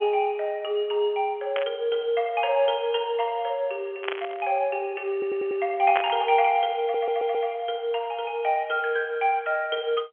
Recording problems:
phone line; 260 Hz to 3.3 kHz, G.711
static burst; at 1.5 s, at 4 s and at 6 s; peak +2 dB vs average level
stutter; at 5 s and at 7 s

